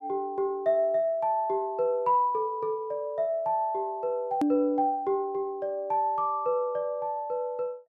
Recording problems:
edit click; at 4.5 s

